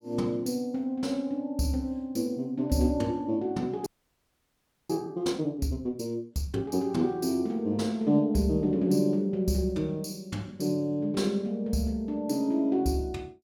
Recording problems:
frozen audio; at 4 s for 1 s

